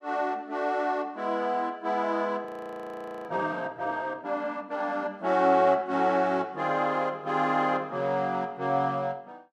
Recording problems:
frozen audio; at 2.5 s for 1 s

